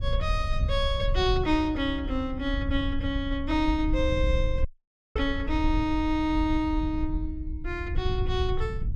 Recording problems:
wind noise; below 74 Hz, SNR 3 dB
dropout; at 4.5 s for 0.5 s

